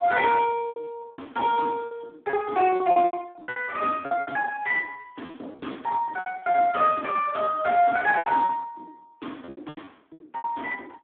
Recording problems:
phone line; 240 Hz to 3.4 kHz, Speex
lost packets; 18% of the sound replaced, filled with repeated pitch periods

